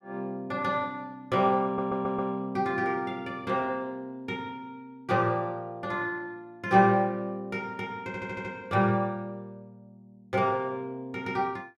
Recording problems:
audio stuttering; at 1.5 s and at 8 s

